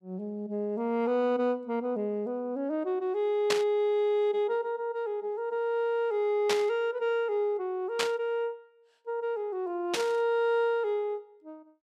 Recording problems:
static burst; 4 times, first at 3.5 s; peak +4 dB vs average level

